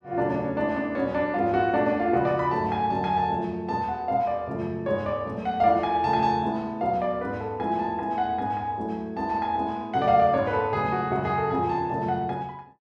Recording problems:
none

